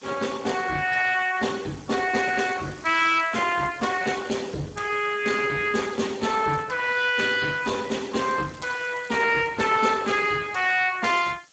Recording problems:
lossy compression; Speex, log-spectral distance 7 dB, nothing above 7.6 kHz
hiss; slope +1 dB per octave, SNR 29 dB
crackle; from 2 to 4.5 s, at 6 s and from 7.5 to 9.5 s; loose cable, SNR 27 dB

